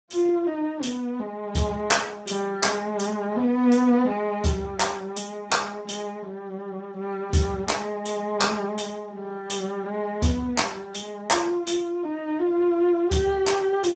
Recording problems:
lossy compression; Speex, log-spectral distance 4 dB, nothing above 7.8 kHz

